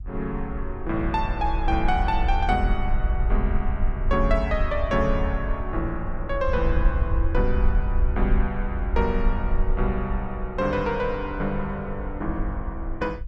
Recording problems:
wind noise; below 60 Hz, SNR 1 dB

